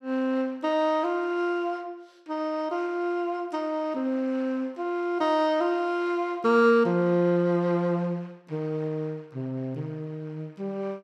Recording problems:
none

